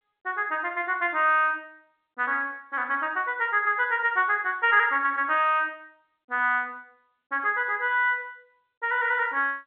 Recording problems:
phone line; 300 Hz to 3.4 kHz, G.711

